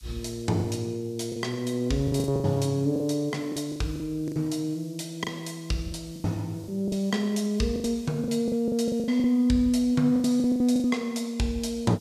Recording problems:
hiss; SNR 26 dB
lost packets; 12% of the sound replaced, filled with the last packet

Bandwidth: 14.5 kHz